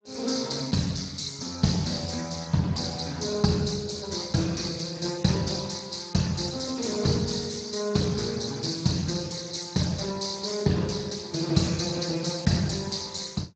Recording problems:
codec artefacts; Speex, log-spectral distance 8 dB, nothing above 18.3 kHz

